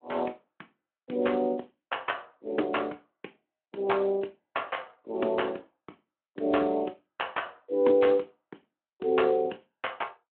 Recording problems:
telephone audio; 260 Hz to 3.3 kHz, Speex

